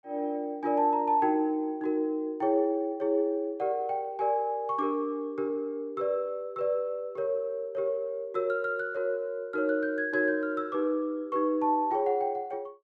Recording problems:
none

